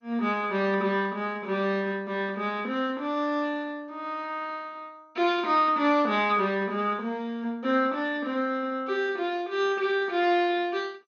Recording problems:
lossy compression; MP2, log-spectral distance 2 dB, nothing above 6.3 kHz

